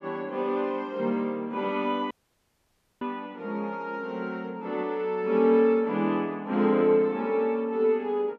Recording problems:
dropout; at 2 s for 1 s

